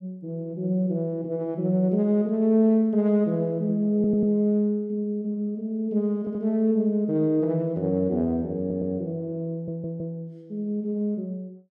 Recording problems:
stutter; 4 times, first at 4 s

